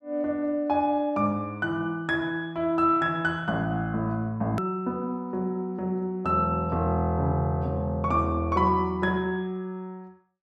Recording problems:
click at an edit; at 4.5 s

